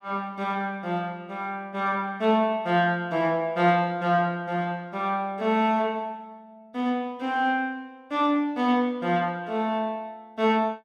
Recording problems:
none

